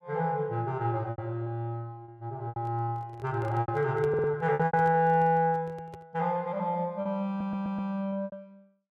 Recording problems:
packet loss; 8% of the sound replaced, filled with repeated pitch periods
handling noise; from 2.5 to 6 s; peak -8 dB vs average level
audio stuttering; at 4 s and at 7.5 s

